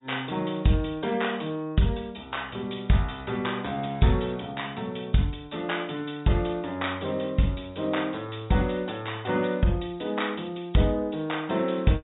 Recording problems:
treble cut off; nothing above 3.8 kHz
lossy compression; MP3, log-spectral distance 4 dB

